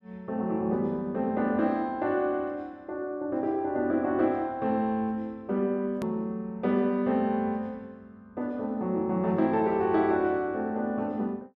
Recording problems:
hard cut with a click; at 6 s

